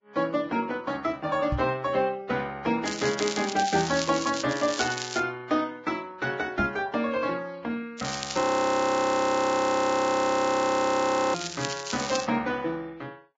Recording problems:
codec artefacts; Vorbis, log-spectral distance 6 dB, nothing above 13.1 kHz
knock on the microphone; at 1.5 s and at 6.5 s; peak +1 dB vs average level
crackling; 4 times, first at 3 s; loose cable, SNR 8 dB
audio freezing; at 8.5 s for 3 s

